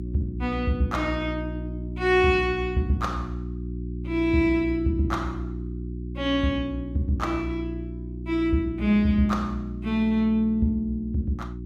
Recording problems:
hum; 60 Hz, harmonics up to 360 Hz, SNR 8 dB

